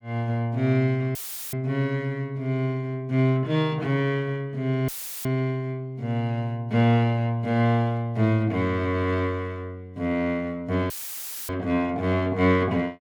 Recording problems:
audio cutting out; at 1 s, at 5 s and at 11 s for 0.5 s; filled with static

